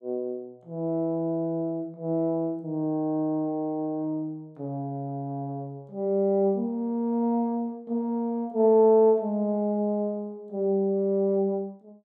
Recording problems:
none

